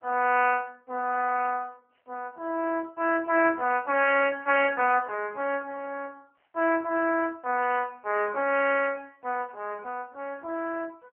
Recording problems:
phone line; 280 Hz to 3 kHz, AMR-NB

